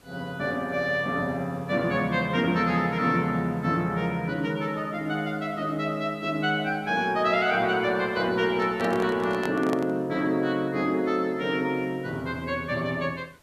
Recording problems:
background hiss; slope -4 dB per octave, SNR 30 dB
handling noise; from 8.5 to 10 s; peak -2 dB vs average level

